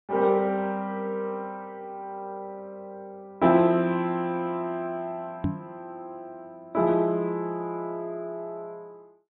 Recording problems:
treble cut off; nothing above 4 kHz
microphone thump; at 5.5 s; peak +3 dB vs average level

